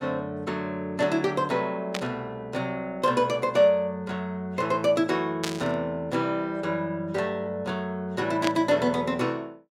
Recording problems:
static burst; at 2 s, at 5.5 s and at 8.5 s; peak +2 dB vs average level

